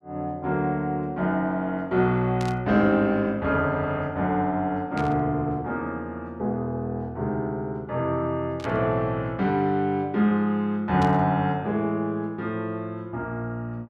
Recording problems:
burst of static; 4 times, first at 2.5 s; peak -9 dB vs average level

